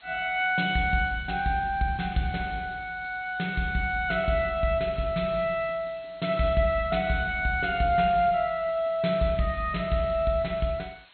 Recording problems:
treble cut off; nothing above 4.3 kHz
background hiss; SNR 27 dB

